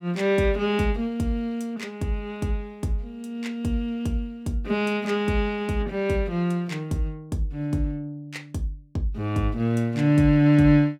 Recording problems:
none

